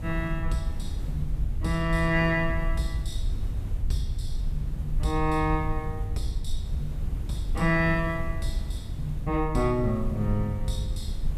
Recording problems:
background hiss; slope -7 dB per octave, SNR 17 dB
rumble; below 68 Hz, SNR 4 dB

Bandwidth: 14.5 kHz